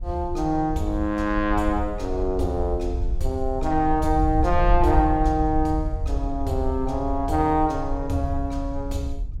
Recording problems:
wind noise; below 62 Hz, SNR 6 dB

